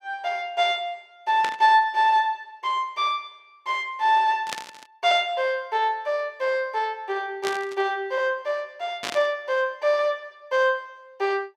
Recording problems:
static burst; 4 times, first at 1.5 s; peak -2 dB vs average level

